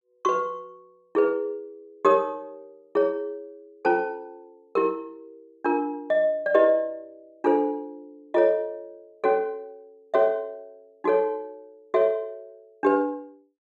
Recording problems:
none

